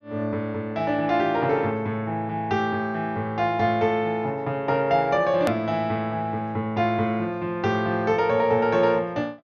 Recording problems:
low-pass filter; nothing above 6.6 kHz
edit click; at 5.5 s

